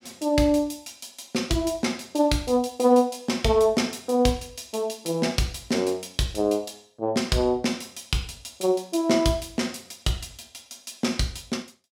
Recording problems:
none

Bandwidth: 17 kHz